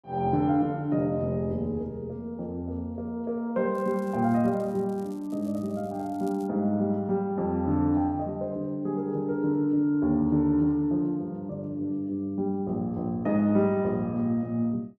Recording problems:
crackle; from 3.5 to 6.5 s; loose cable, SNR 30 dB

